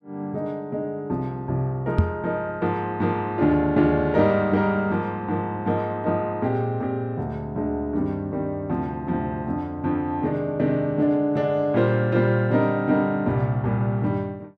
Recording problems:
microphone thump; at 2 s; peak +8 dB vs average level

